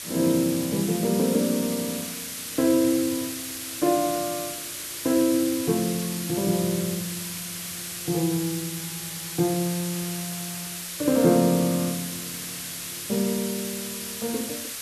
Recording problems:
background hiss; SNR 6 dB

